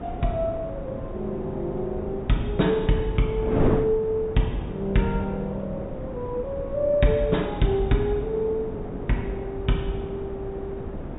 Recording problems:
low-pass filter; nothing above 4 kHz
wind noise; below 430 Hz, SNR 7 dB

